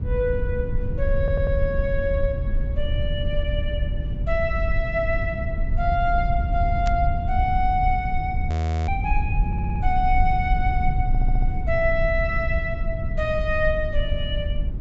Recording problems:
treble missing; nothing above 8 kHz
rumble; below 84 Hz, SNR 0 dB
stutter; at 1 s, at 9.5 s and at 11 s
static burst; at 7 s; peak -7 dB vs average level
audio freezing; at 8.5 s

